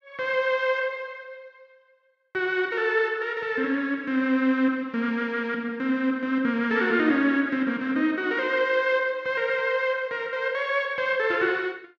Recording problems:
none

